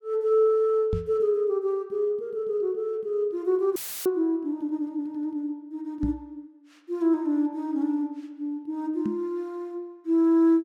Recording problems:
knock on the microphone; at 1 s, at 6 s and at 9 s; peak +1 dB vs average level
dropout; at 4 s; filled with static

